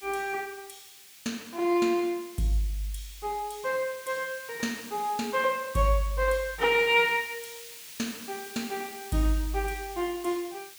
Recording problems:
hiss; SNR 15 dB

